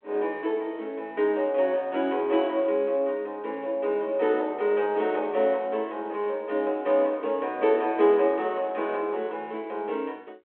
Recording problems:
telephone audio; 300 Hz to 3.3 kHz, G.726

